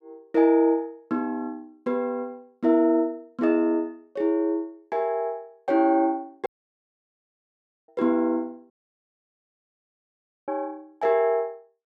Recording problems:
dropout; at 6.5 s for 1.5 s and at 8.5 s for 2 s

